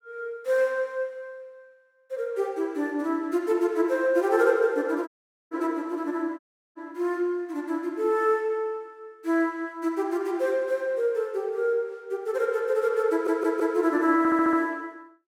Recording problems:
audio cutting out; at 5 s and at 6.5 s
stutter; at 13 s and at 14 s

